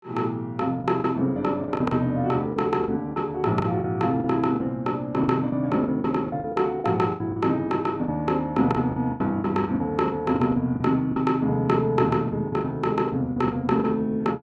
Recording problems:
packet loss; 12% of the sound replaced, filled with the last packet

